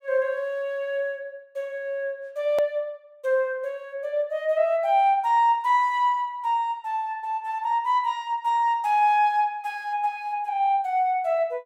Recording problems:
hard cut with a click; at 2.5 s

